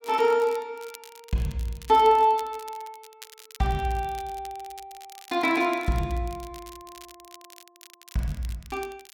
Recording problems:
crackling; vinyl, SNR 22 dB

